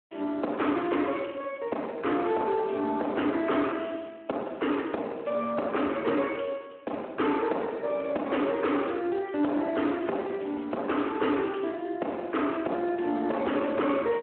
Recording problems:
telephone audio; 220 Hz to 3.2 kHz, Speex
distorted audio; soft clipping, signal-to-distortion ratio 12 dB

